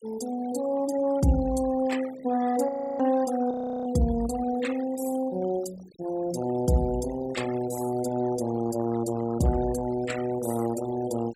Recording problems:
denoising artefacts; signal-to-artefact ratio 16 dB
audio freezing; at 2.5 s and at 3.5 s

